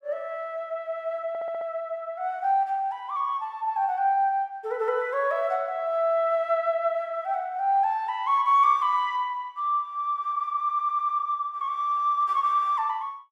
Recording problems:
audio stuttering; at 1.5 s and at 11 s

